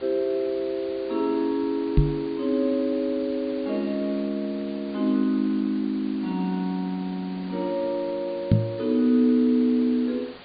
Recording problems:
low-pass filter; nothing above 4.7 kHz
background hiss; SNR 19 dB
knock on the microphone; at 2 s and at 8.5 s; peak +10 dB vs average level

